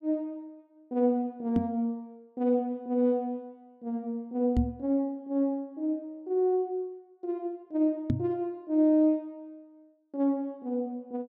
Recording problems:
knock on the microphone; at 1.5 s, at 4.5 s and at 8 s; peak +6 dB vs average level

